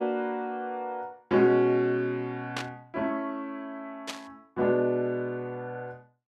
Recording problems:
static burst; at 2.5 s and at 4 s; peak -1 dB vs average level

